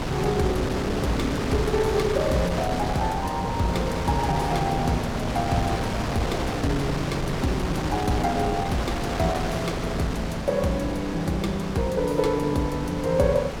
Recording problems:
wind noise; below 1.2 kHz, SNR 4 dB

